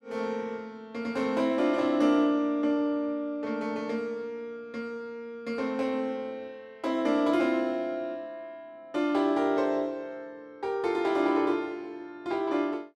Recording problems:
none

